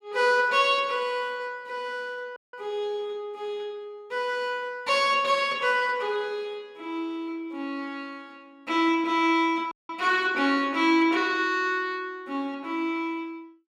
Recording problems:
dropout; at 2.5 s and at 9.5 s

